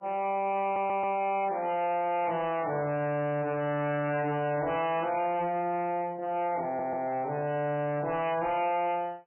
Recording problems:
lossy codec; MP3, log-spectral distance 3 dB, nothing above 2.5 kHz
distortion; soft clipping, signal-to-distortion ratio 10 dB
audio stuttering; at 0.5 s and at 6.5 s

